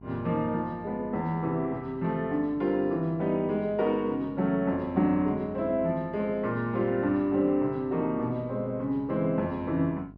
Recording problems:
electrical hum; 50 Hz, harmonics up to 1.1 kHz, SNR 22 dB

